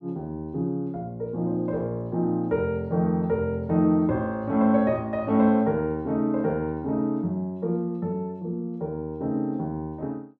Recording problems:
none

